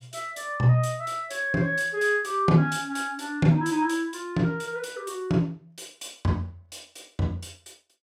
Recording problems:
none

